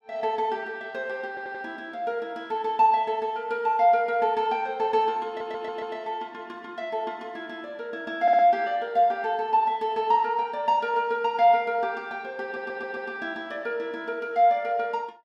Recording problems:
audio stuttering; 4 times, first at 1.5 s

